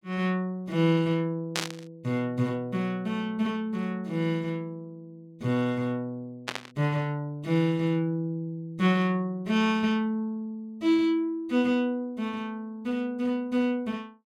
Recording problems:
burst of static; at 1.5 s and at 6.5 s; peak +3 dB vs average level

